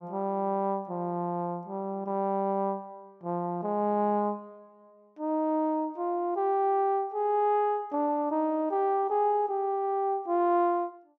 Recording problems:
none

